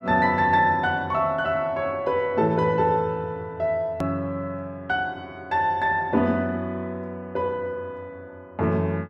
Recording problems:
edit click; at 4 s

